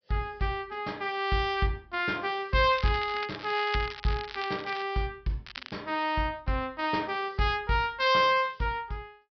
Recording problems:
treble missing; nothing above 5.5 kHz
crackle; from 2.5 to 5 s and at 5.5 s; loose cable, SNR 13 dB

